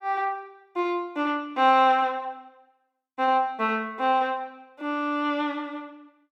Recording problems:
none

